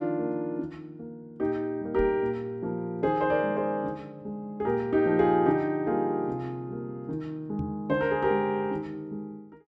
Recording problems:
microphone bump; at 2 s and at 7.5 s; peak -2 dB vs average level

